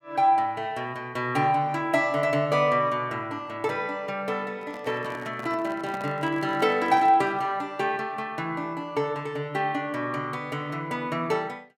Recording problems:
handling noise; from 4.5 to 7.5 s; peak -7 dB vs average level

